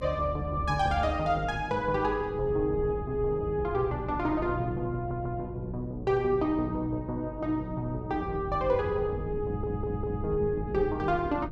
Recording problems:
hum; 50 Hz, harmonics up to 550 Hz, SNR 15 dB
wind on the microphone; below 180 Hz, SNR 12 dB
stutter; at 5 s and at 9.5 s

